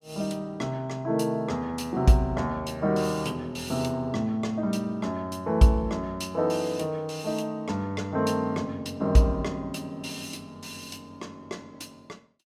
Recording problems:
none

